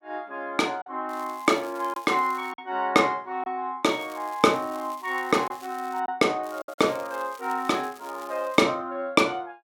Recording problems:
packet loss; 3% of the sound replaced, filled with silence
crackling; from 1 to 2.5 s, from 4 to 6 s and from 6.5 to 8.5 s; loose cable, SNR 23 dB

